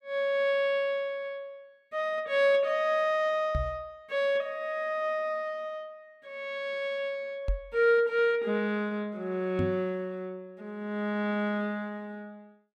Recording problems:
knock on the microphone; at 3.5 s, at 7.5 s and at 9.5 s; peak +2 dB vs average level

